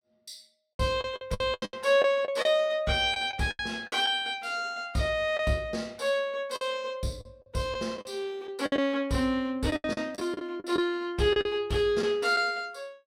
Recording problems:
lost packets; 10% of the sound replaced, filled with the last packet

